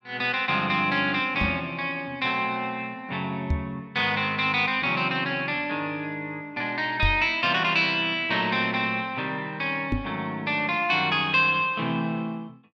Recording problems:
knock on the microphone; 4 times, first at 1.5 s; peak +2 dB vs average level

